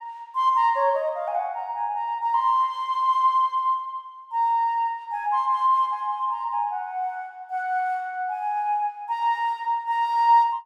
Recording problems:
none

